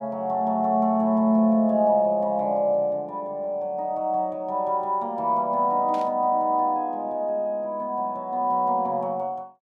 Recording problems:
static burst; at 6 s; peak -16 dB vs average level

